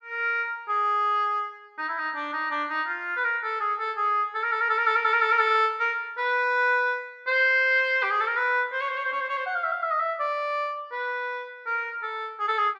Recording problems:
none

